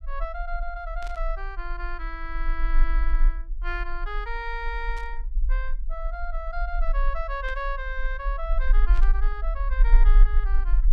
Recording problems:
low-frequency rumble; below 36 Hz, strongest tone 28 Hz, SNR -6 dB
burst of static; 4 times, first at 1 s; peak -7 dB vs average level

